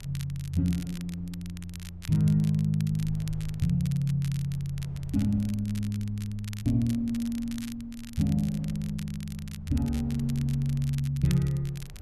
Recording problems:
rumble; below 84 Hz, strongest tone 24 Hz, SNR 19 dB
crackle; vinyl, SNR 18 dB

